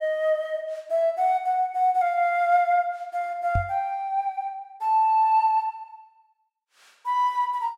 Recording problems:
microphone bump; at 3.5 s; peak 0 dB vs average level

